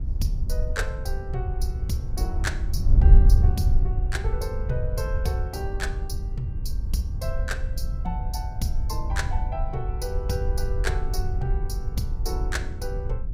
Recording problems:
wind noise; below 72 Hz, SNR -6 dB

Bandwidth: 16.5 kHz